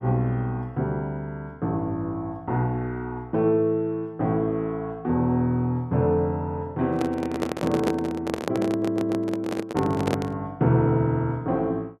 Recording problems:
handling noise; from 7 to 10 s; peak +4 dB vs average level
audio stuttering; at 8.5 s

